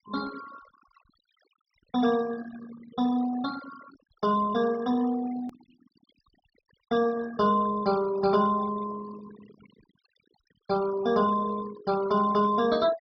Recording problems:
treble cut off; nothing above 5.5 kHz
noise reduction artefacts; signal-to-artefact ratio 16 dB
edit click; at 5.5 s

